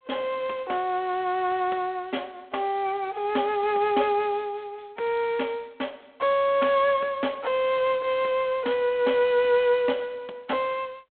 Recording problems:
phone line; 240 Hz to 3.5 kHz, G.726

